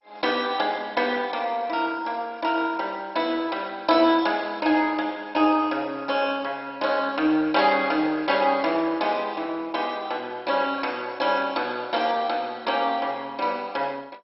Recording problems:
codec artefacts; MP2, log-spectral distance 3 dB, nothing above 5.5 kHz

